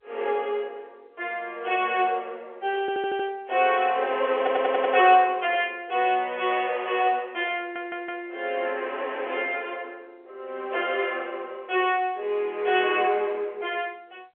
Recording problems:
phone line; 320 Hz to 3.4 kHz, G.711
stutter; at 3 s, at 4.5 s and at 7.5 s

